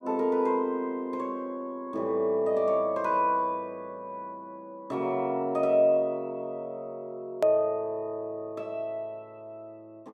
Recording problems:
edit click; at 7.5 s

